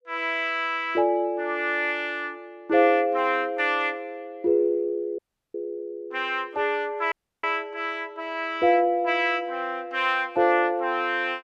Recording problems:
audio cutting out; at 5 s and at 7 s

